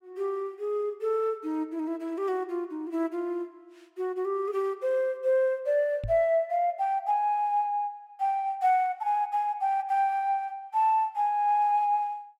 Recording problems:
knock on the microphone; at 6 s; peak -3 dB vs average level

